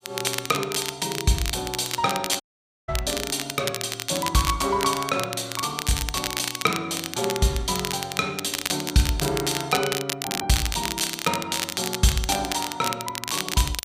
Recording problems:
crackle; vinyl, SNR 4 dB
dropout; at 2.5 s

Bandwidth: 15 kHz